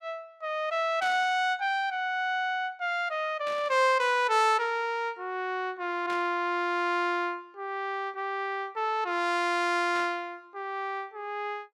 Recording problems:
static burst; 4 times, first at 1 s; peak -10 dB vs average level

